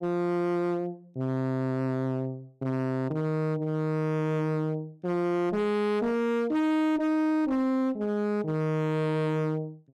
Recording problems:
distorted audio; hard clipping, signal-to-distortion ratio 8 dB

